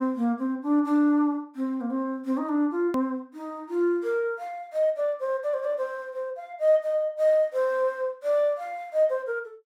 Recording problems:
edit click; at 3 s

